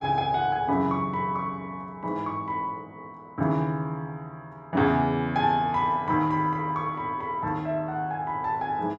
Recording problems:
none

